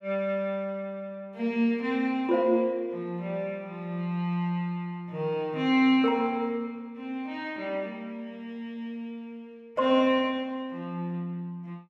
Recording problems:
none

